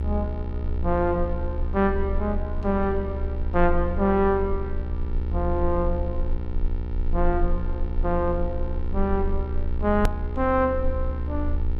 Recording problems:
hum; 60 Hz, harmonics up to 1.8 kHz, SNR 11 dB
rumble; below 72 Hz, strongest tone 22 Hz, SNR 4 dB
edit click; at 10 s

